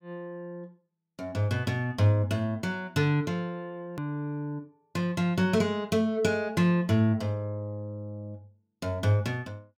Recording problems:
hard cut with a click; at 4 s

